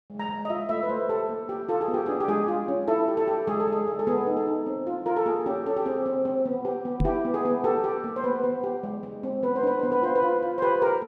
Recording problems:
microphone thump; at 7 s; peak +4 dB vs average level

